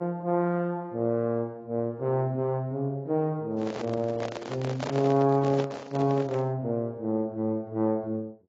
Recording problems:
lossy compression; Vorbis, then AAC, log-spectral distance 2 dB
handling noise; from 3.5 to 6.5 s; peak -1 dB vs average level

